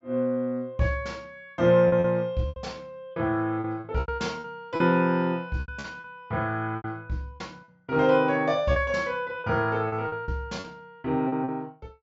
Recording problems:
treble missing; nothing above 8 kHz
lost packets; 10% of the sound replaced, filled with repeated pitch periods

